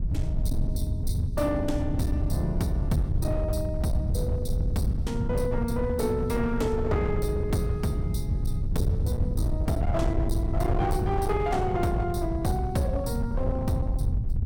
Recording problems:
distorted audio; hard clipping, uneven, signal-to-distortion ratio 11 dB
low-frequency rumble; below 110 Hz, SNR 1 dB

